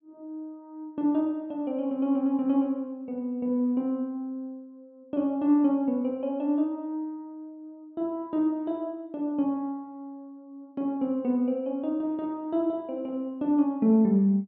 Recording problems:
none

